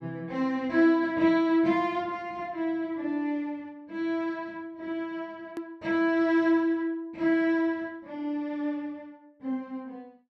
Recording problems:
click at an edit; at 5.5 s

